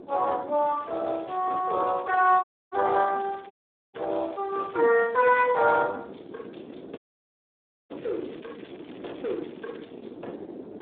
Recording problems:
telephone audio; 280 Hz to 3.6 kHz, Speex
wind noise; below 470 Hz, SNR 19 dB
crackling; from 1 to 5.5 s and from 8 to 10 s; loose cable, SNR 27 dB
dropout; at 2.5 s, at 3.5 s and at 7 s for 1 s

